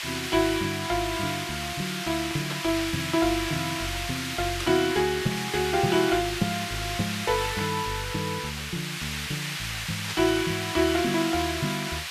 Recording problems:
hiss; SNR 4 dB
burst of static; 4 times, first at 2.5 s; peak -3 dB vs average level

